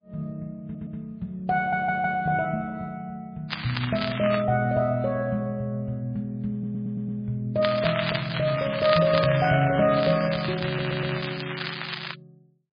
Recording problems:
codec artefacts; MP3, log-spectral distance 7 dB
audio stuttering; 4 times, first at 0.5 s
crackle; at 3.5 s and from 7.5 to 12 s; loose cable, SNR 6 dB

